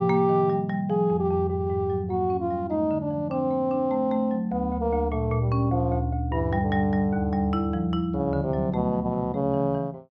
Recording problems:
treble cut off; nothing above 8 kHz

